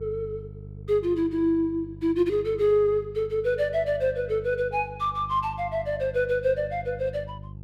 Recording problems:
electrical hum; 50 Hz, harmonics up to 400 Hz, SNR 16 dB

